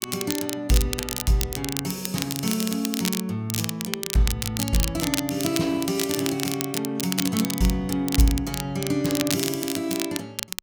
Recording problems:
crackling; vinyl, SNR 4 dB

